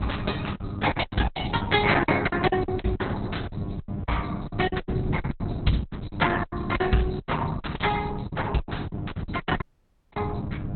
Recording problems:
lossy codec; Opus, log-spectral distance 7 dB, nothing above 4 kHz
electrical hum; 50 Hz, harmonics up to 1.4 kHz, SNR 13 dB
wind noise; below 200 Hz, SNR 7 dB
packet loss; 17% of the sound replaced, filled with silence
dropout; at 9.5 s for 0.5 s

